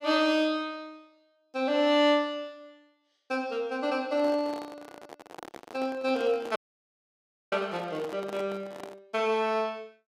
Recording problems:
microphone handling noise; from 4 to 9 s; peak -9 dB vs average level
audio cutting out; at 6.5 s for 1 s

